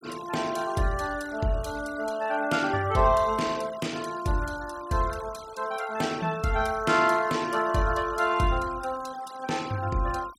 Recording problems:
noise reduction artefacts; signal-to-artefact ratio 19 dB

